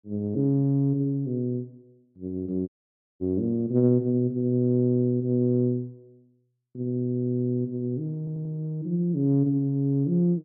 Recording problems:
dropout; at 2.5 s for 0.5 s
stutter; at 8 s

